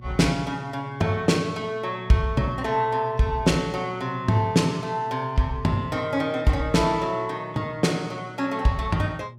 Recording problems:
hum; 60 Hz, harmonics up to 600 Hz, SNR 19 dB

